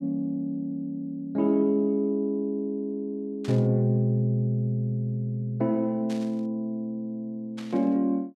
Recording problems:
static burst; at 3.5 s, at 6 s and at 7.5 s; peak -12 dB vs average level

